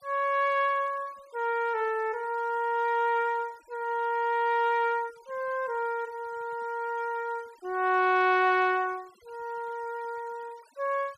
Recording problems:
noise reduction artefacts; signal-to-artefact ratio 27 dB

